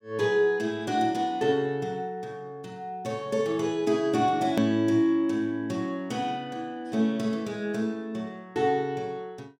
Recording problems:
click at an edit; at 4.5 s

